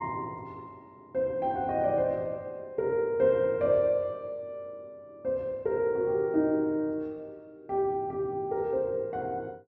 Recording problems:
treble missing; nothing above 8 kHz

